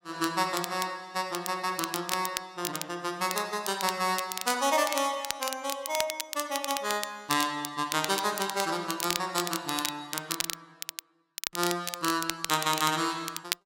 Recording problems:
crackle; vinyl, SNR 5 dB

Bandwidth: 16 kHz